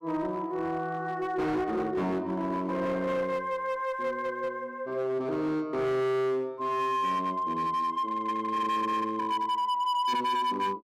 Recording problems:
distorted audio; hard clipping, signal-to-distortion ratio 10 dB

